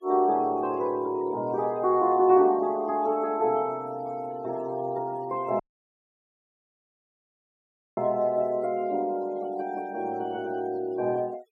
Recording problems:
noise reduction artefacts; signal-to-artefact ratio 26 dB
audio cutting out; at 5.5 s for 2.5 s

